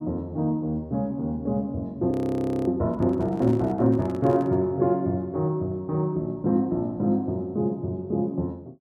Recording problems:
audio freezing; at 2 s for 0.5 s
handling noise; from 3 to 4.5 s; peak -10 dB vs average level

